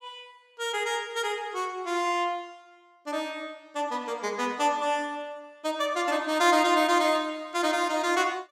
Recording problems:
none

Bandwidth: 16 kHz